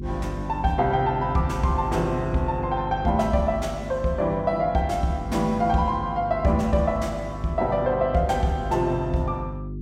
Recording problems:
hum; 50 Hz, harmonics up to 400 Hz, SNR 10 dB

